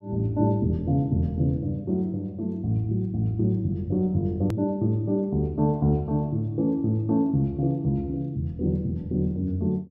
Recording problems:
edit click; at 4.5 s

